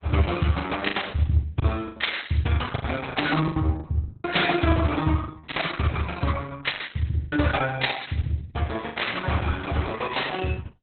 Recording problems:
codec artefacts; Opus, log-spectral distance 5 dB, nothing above 4 kHz
lost packets; 10% of the sound replaced, filled with the last packet

